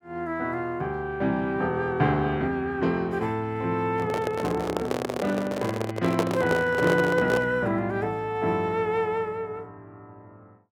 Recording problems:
handling noise; from 4 to 7.5 s; peak +4 dB vs average level

